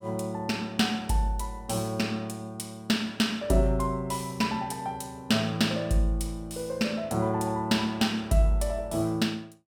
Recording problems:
none

